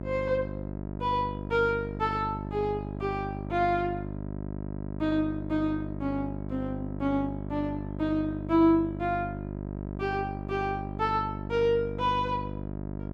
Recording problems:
hum; 50 Hz, harmonics up to 1 kHz, SNR 7 dB

